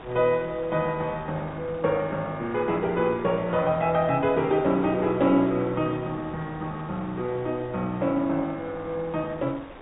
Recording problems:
low-pass filter; nothing above 4 kHz
wind on the microphone; below 1.3 kHz, SNR 18 dB

